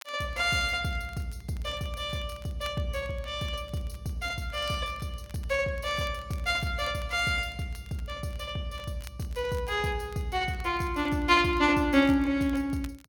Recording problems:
crackle; vinyl, SNR 25 dB

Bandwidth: 17 kHz